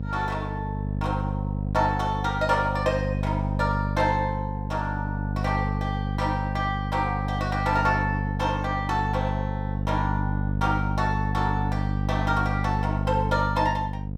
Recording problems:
hum; 50 Hz, harmonics up to 550 Hz, SNR 1 dB

